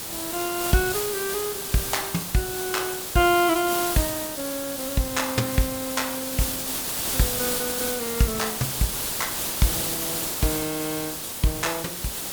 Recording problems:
hiss; slope -2 dB per octave, SNR 0 dB

